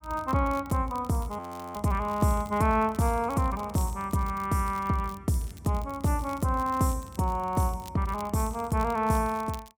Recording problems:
crackling; vinyl, SNR 23 dB
frozen audio; at 1.5 s

